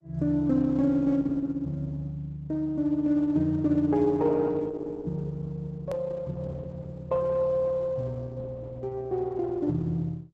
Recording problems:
lossy codec; Opus, log-spectral distance 2 dB, nothing above 13.1 kHz
click at an edit; at 6 s

